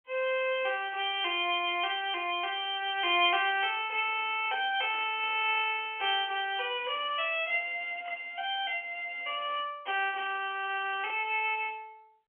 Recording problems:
telephone audio; 260 Hz to 3.4 kHz, G.711
static burst; at 5 s and at 11 s; peak -13 dB vs average level

